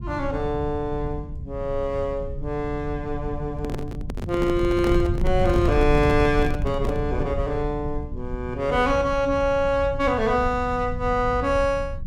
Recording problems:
low-frequency rumble; below 110 Hz, SNR 7 dB
handling noise; from 3.5 to 7 s; peak -2 dB vs average level

